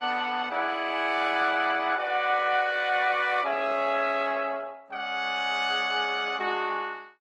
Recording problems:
lossy compression; Opus, log-spectral distance 4 dB

